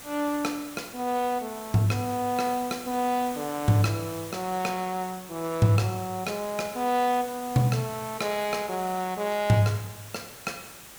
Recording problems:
hiss; slope -2 dB per octave, SNR 14 dB

